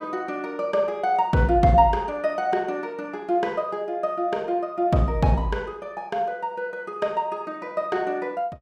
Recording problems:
none

